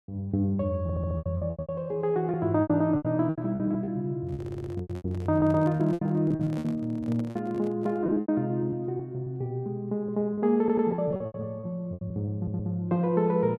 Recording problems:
lost packets; 15% of the sound replaced, filled with repeated pitch periods
stutter; 4 times, first at 1 s
handling noise; from 4 to 8 s; peak -9 dB vs average level

